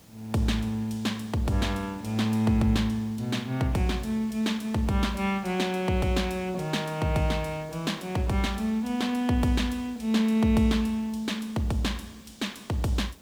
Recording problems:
hiss; SNR 25 dB

